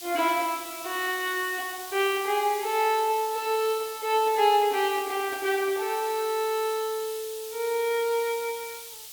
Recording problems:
background hiss; SNR 12 dB

